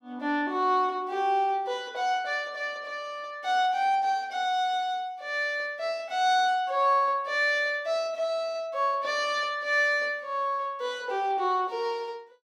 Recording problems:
none

